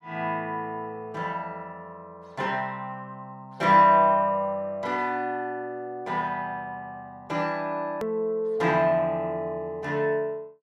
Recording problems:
edit click; at 8 s

